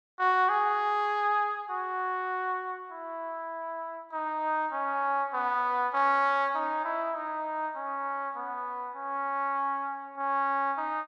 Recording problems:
none

